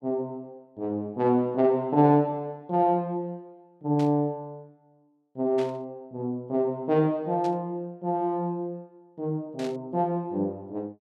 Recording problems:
static burst; 4 times, first at 4 s; peak -12 dB vs average level

